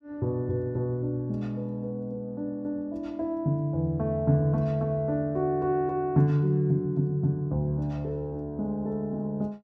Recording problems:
none

